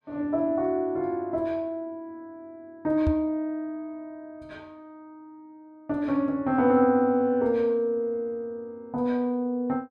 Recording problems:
microphone bump; at 3 s; peak +3 dB vs average level

